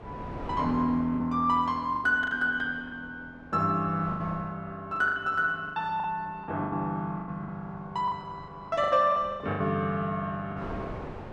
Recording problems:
wind on the microphone; below 760 Hz, SNR 16 dB
packet loss; 11% of the sound replaced, filled with the last packet

